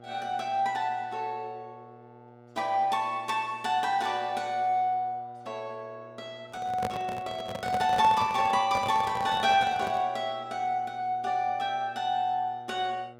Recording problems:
mains hum; 60 Hz, harmonics up to 2 kHz, SNR 23 dB
microphone handling noise; from 6.5 to 10 s; peak -1 dB vs average level

